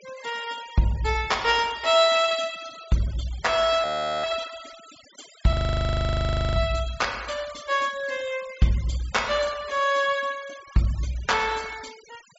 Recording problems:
treble missing; nothing above 8 kHz
noise reduction artefacts; signal-to-artefact ratio 18 dB
frozen audio; at 4 s and at 5.5 s for 1 s

